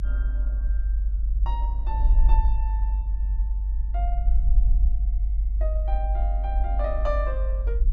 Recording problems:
rumble; below 50 Hz, strongest tone 48 Hz, SNR -10 dB

